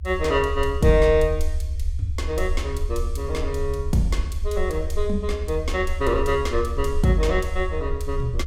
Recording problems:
rumble; below 74 Hz, SNR 5 dB

